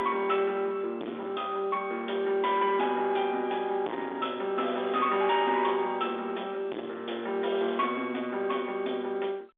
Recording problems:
phone line; 280 Hz to 3.6 kHz, G.711
distortion; soft clipping, signal-to-distortion ratio 5 dB

